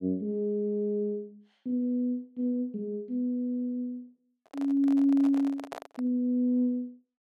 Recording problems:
handling noise; from 4.5 to 6 s; peak -6 dB vs average level

